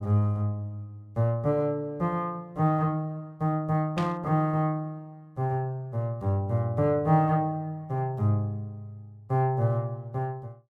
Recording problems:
static burst; at 4 s; peak -5 dB vs average level

